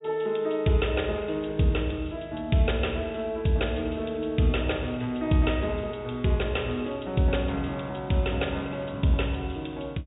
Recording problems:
low-pass filter; nothing above 4 kHz

